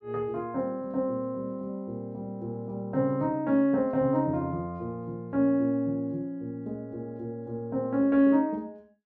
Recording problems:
none

